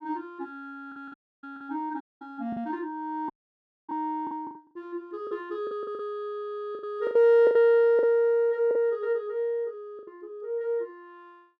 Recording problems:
lost packets; 9% of the sound replaced, filled with the last packet
audio cutting out; at 1 s, at 2 s and at 3.5 s for 0.5 s

